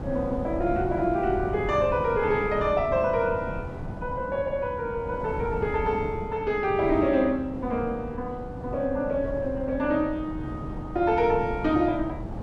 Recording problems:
wind on the microphone; below 330 Hz, SNR 9 dB

